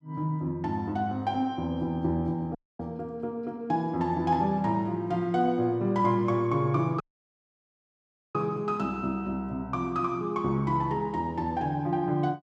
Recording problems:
audio cutting out; at 2.5 s and at 7 s for 1.5 s

